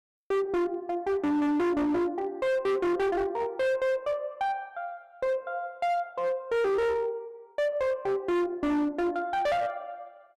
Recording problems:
distorted audio; hard clipping, signal-to-distortion ratio 7 dB

